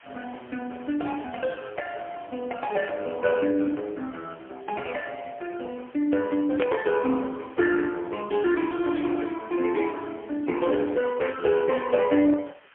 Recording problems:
telephone audio; 220 Hz to 2.9 kHz, AMR-NB, then MP3
hiss; SNR 27 dB
static burst; at 6.5 s; peak -11 dB vs average level

